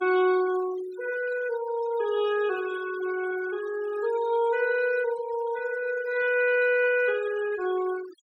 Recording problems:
noise reduction artefacts; signal-to-artefact ratio 16 dB

